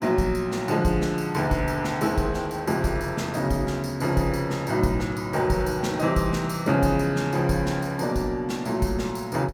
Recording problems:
none

